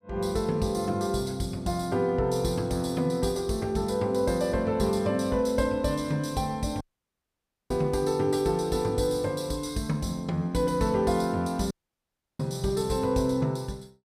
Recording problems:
dropout; at 7 s for 1 s and at 12 s for 0.5 s

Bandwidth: 15.5 kHz